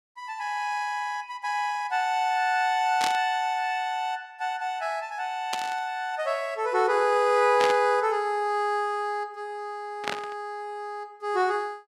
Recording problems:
burst of static; 4 times, first at 3 s; peak +2 dB vs average level

